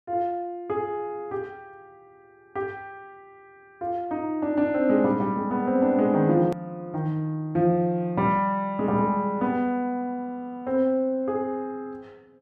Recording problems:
click at an edit; at 6.5 s

